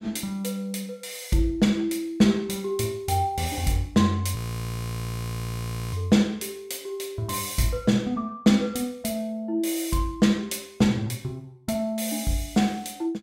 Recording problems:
frozen audio; at 4.5 s for 1.5 s

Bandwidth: 16 kHz